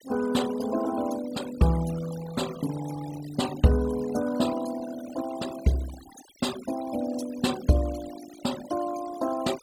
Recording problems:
denoising artefacts; signal-to-artefact ratio 14 dB

